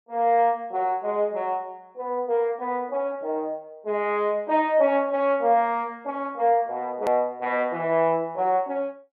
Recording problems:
click at an edit; at 7 s

